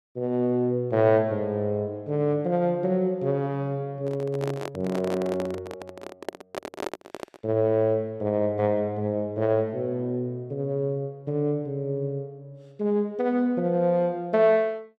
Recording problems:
handling noise; from 4 to 7.5 s; peak -2 dB vs average level

